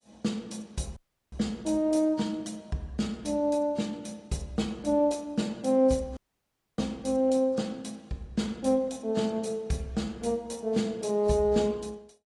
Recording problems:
codec artefacts; AAC, log-spectral distance 3 dB, nothing above 10.4 kHz
dropout; at 1 s and at 6 s for 0.5 s

